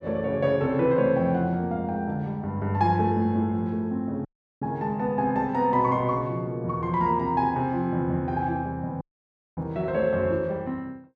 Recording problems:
dropout; at 4.5 s and at 9 s for 0.5 s

